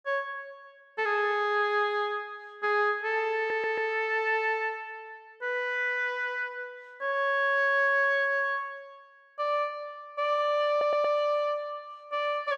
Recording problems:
audio stuttering; at 3.5 s and at 11 s

